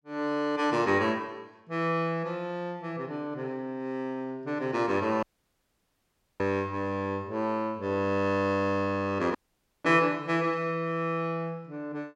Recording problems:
dropout; at 5 s for 1 s and at 9.5 s

